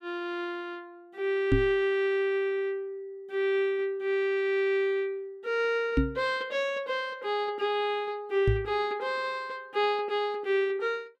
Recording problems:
microphone bump; at 1.5 s, at 6 s and at 8.5 s; peak +7 dB vs average level

